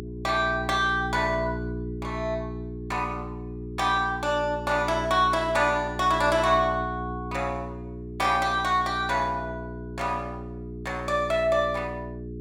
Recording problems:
hum; 60 Hz, harmonics up to 420 Hz, SNR 10 dB

